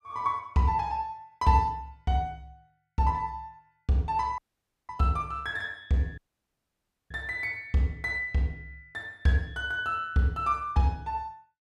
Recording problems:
dropout; at 4.5 s for 0.5 s and at 6 s for 1 s

